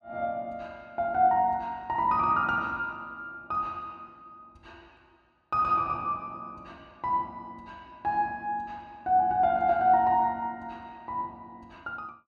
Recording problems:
none

